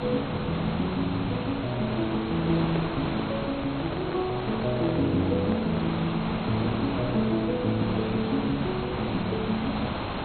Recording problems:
lossy codec; MP2, log-spectral distance 8 dB, nothing above 3.6 kHz
hiss; SNR 4 dB
microphone handling noise; from 2.5 to 6 s; peak -3 dB vs average level

